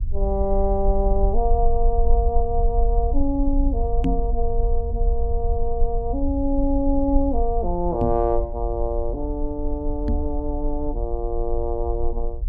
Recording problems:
low-frequency rumble; below 50 Hz, strongest tone 20 Hz, SNR 1 dB
knock on the microphone; at 4 s, at 8 s and at 10 s; peak +5 dB vs average level

